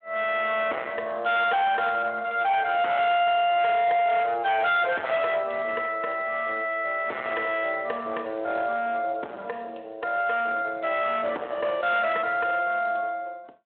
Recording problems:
telephone audio; 370 Hz to 3.9 kHz, Speex
distorted audio; hard clipping, uneven, signal-to-distortion ratio 8 dB

